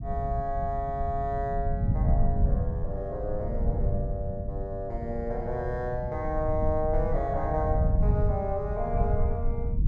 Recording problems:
low-frequency rumble; below 100 Hz, SNR -1 dB

